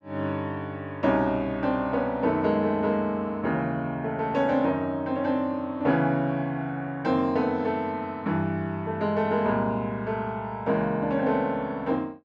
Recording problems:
none

